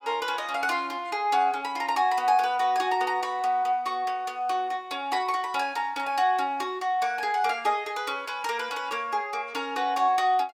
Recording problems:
none

